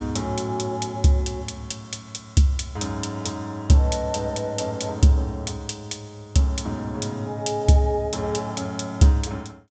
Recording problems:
low-pass filter; nothing above 8 kHz

